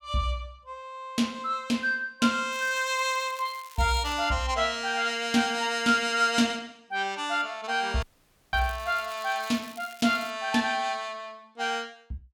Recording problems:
crackling; from 2.5 to 4 s and from 8 to 10 s; loose cable, SNR 20 dB
dropout; at 8 s for 0.5 s

